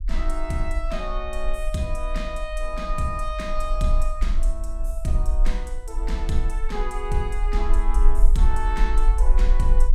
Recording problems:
low-frequency rumble; below 40 Hz, strongest tone 20 Hz, SNR -4 dB

